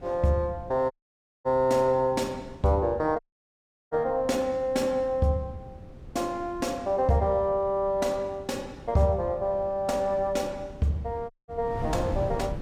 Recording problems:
wind on the microphone; below 230 Hz, SNR 15 dB
audio cutting out; at 1 s for 0.5 s, at 3 s for 0.5 s and at 11 s

